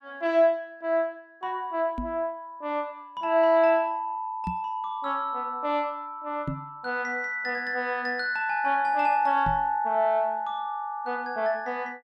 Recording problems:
microphone thump; 4 times, first at 2 s; peak -1 dB vs average level

